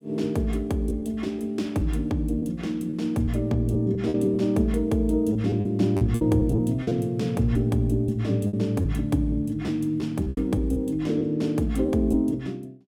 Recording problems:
packet loss; 7% of the sound replaced, filled with repeated pitch periods

